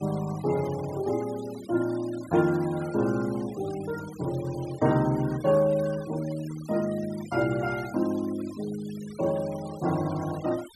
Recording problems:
noise reduction artefacts; signal-to-artefact ratio 18 dB

